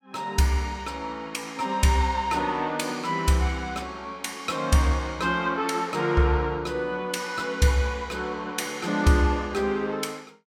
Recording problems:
none

